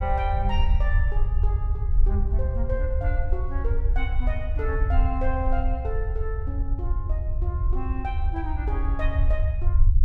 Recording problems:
low-frequency rumble; below 68 Hz, SNR -7 dB

